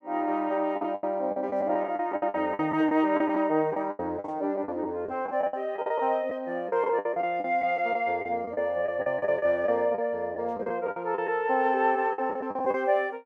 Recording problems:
packet loss; 14% of the sound replaced, filled with the last packet

